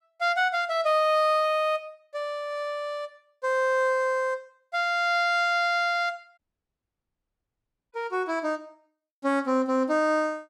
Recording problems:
audio cutting out; at 6.5 s for 1.5 s

